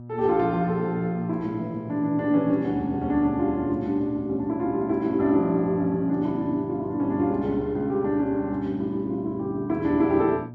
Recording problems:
hum; 60 Hz, harmonics up to 960 Hz, SNR 16 dB

